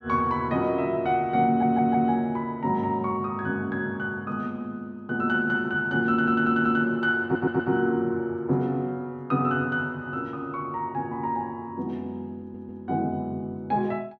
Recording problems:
stutter; 4 times, first at 1.5 s

